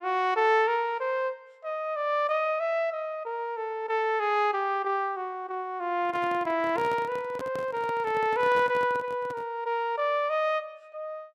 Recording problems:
microphone handling noise; from 6 to 9.5 s; peak -7 dB vs average level

